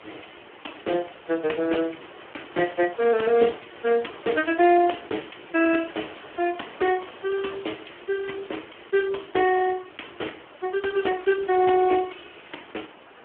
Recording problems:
telephone audio; 260 Hz to 3.3 kHz, Speex
hiss; SNR 21 dB

